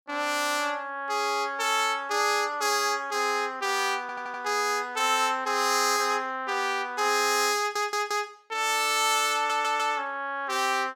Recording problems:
audio stuttering; at 4 s, at 7.5 s and at 9.5 s

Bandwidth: 17.5 kHz